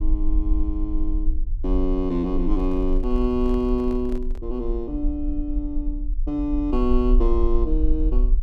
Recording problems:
rumble; below 42 Hz, strongest tone 22 Hz, SNR 1 dB
microphone handling noise; from 2.5 to 4.5 s; peak -11 dB vs average level

